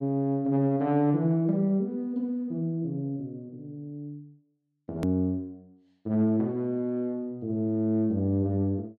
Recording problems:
click at an edit; at 5 s

